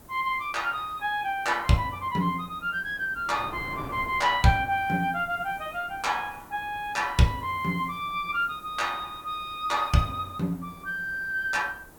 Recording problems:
hiss; slope +2 dB per octave, SNR 27 dB
wind noise; below 820 Hz, SNR 20 dB

